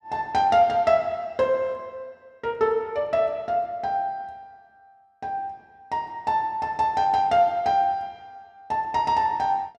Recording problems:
none

